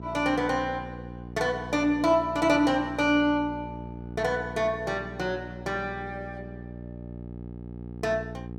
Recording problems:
electrical hum; 60 Hz, harmonics up to 900 Hz, SNR 13 dB

